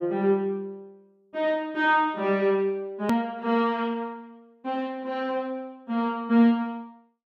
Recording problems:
edit click; at 3 s

